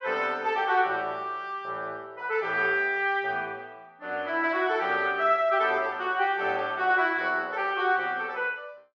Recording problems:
none

